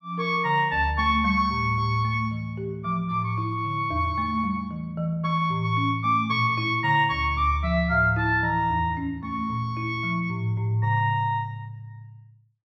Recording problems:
none

